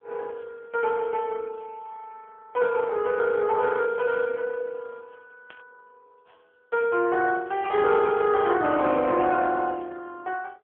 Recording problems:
telephone audio; 280 Hz to 3.3 kHz, AMR-NB
burst of static; at 5.5 s; peak -16 dB vs average level

